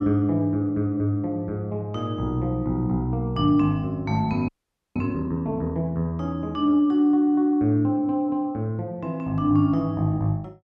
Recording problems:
frozen audio; at 4.5 s

